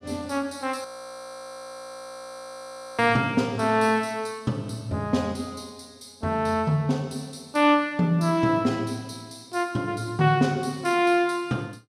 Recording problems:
audio freezing; at 1 s for 2 s

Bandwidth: 15 kHz